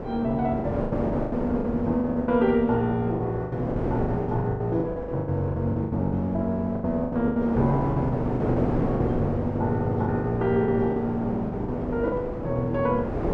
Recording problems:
hum; 50 Hz, harmonics up to 550 Hz, SNR 18 dB
wind noise; below 560 Hz, SNR 5 dB
lost packets; 14% of the sound replaced, filled with the last packet

